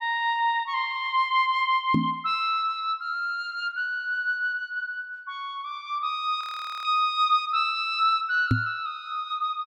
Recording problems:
microphone bump; at 2 s and at 8.5 s; peak +6 dB vs average level
audio freezing; at 6.5 s

